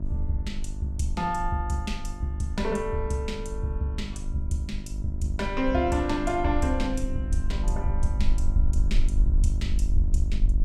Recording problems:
hum; 50 Hz, harmonics up to 700 Hz, SNR 9 dB
low-frequency rumble; below 48 Hz, strongest tone 20 Hz, SNR 2 dB

